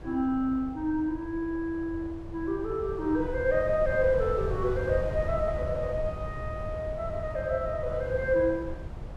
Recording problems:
wind noise; below 150 Hz, SNR 9 dB

